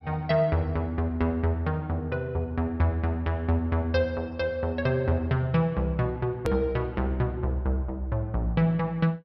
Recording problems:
low-pass filter; nothing above 5.7 kHz
edit click; at 6.5 s

